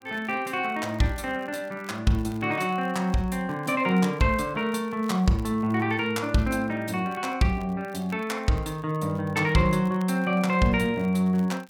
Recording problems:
crackling; vinyl, SNR 29 dB

